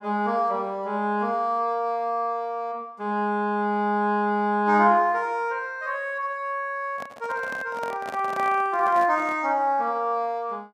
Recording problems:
handling noise; from 7 to 9.5 s; peak -7 dB vs average level

